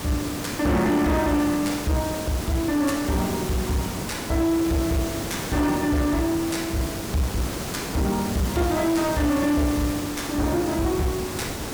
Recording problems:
distorted audio; soft clipping, signal-to-distortion ratio 12 dB
hiss; slope -4 dB per octave, SNR 6 dB

